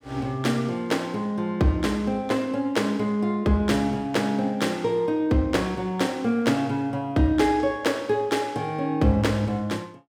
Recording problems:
none

